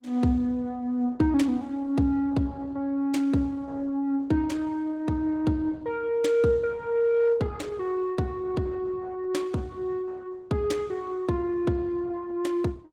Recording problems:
lossy compression; Opus, log-spectral distance 2 dB, nothing above 17.1 kHz

